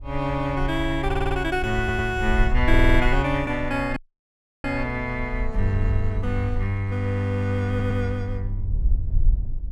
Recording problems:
wind noise; below 54 Hz, SNR 4 dB
audio stuttering; 4 times, first at 1 s
dropout; at 4 s for 0.5 s

